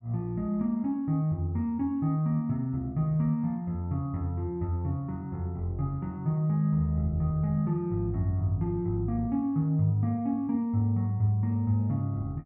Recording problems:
none

